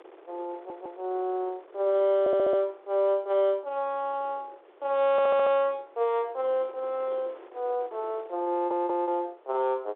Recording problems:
phone line; 300 Hz to 3.9 kHz, G.711
wind on the microphone; below 860 Hz, SNR 24 dB
packet loss; 1.3% of the sound replaced, filled with repeated pitch periods
audio stuttering; 4 times, first at 0.5 s

